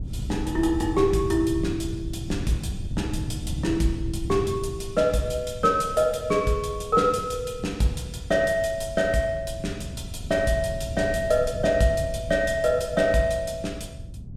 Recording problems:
wind on the microphone; below 140 Hz, SNR 10 dB

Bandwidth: 16 kHz